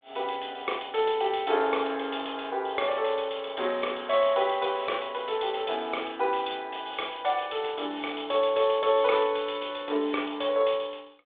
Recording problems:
telephone audio; 300 Hz to 3.6 kHz, G.726

